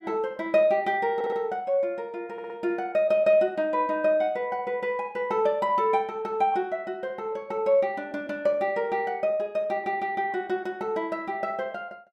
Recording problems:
audio stuttering; at 1 s and at 2.5 s

